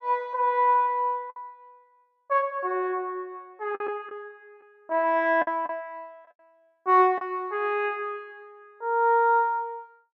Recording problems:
packet loss; 3% of the sound replaced, filled with the last packet

